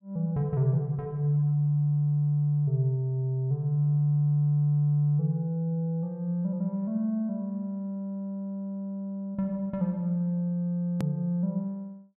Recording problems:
edit click; at 11 s

